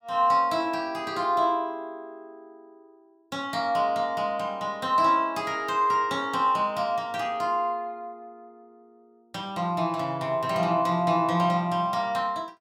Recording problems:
none

